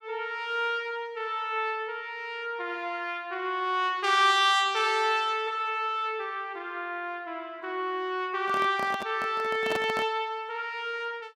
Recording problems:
handling noise; from 8.5 to 10 s; peak -1 dB vs average level

